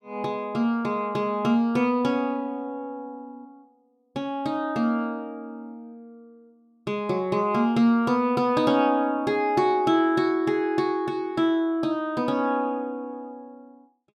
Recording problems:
none

